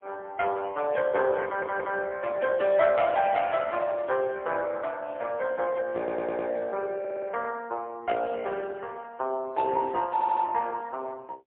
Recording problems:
phone line; 320 Hz to 3.2 kHz, AMR-NB, then MP3
audio stuttering; 4 times, first at 1.5 s

